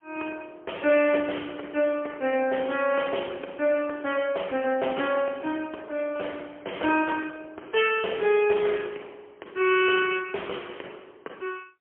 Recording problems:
phone line; 280 Hz to 3.2 kHz, AMR-NB, then MP3

